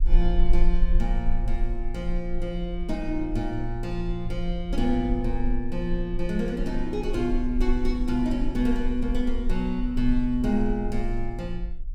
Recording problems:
low-frequency rumble; below 36 Hz, strongest tone 16 Hz, SNR 3 dB

